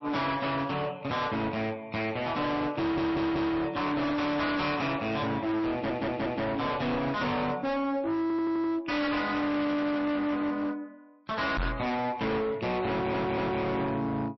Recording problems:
lossy codec; MP3, log-spectral distance 2 dB, nothing above 5.7 kHz
distortion; hard clipping, signal-to-distortion ratio 6 dB
audio stuttering; 4 times, first at 3 s
microphone thump; at 12 s; peak +1 dB vs average level

